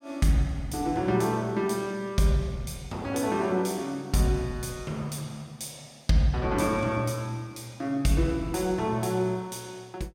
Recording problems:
none

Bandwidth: 16.5 kHz